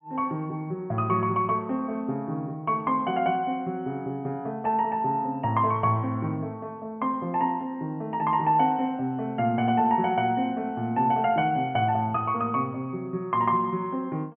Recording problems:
low-pass filter; nothing above 3.2 kHz

